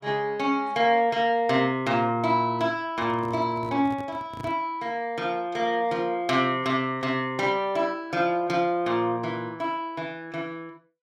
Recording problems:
handling noise; from 3 to 4.5 s; peak -8 dB vs average level

